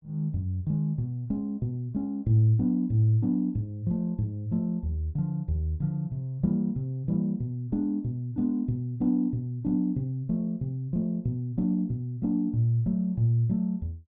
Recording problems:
none

